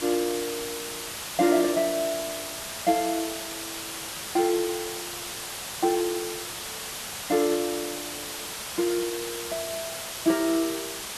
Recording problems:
hiss; slope 0 dB per octave, SNR 5 dB

